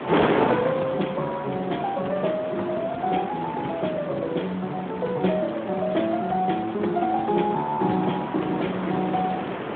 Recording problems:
telephone audio; 130 Hz to 3.6 kHz, Speex
wind on the microphone; below 1.1 kHz, SNR 5 dB

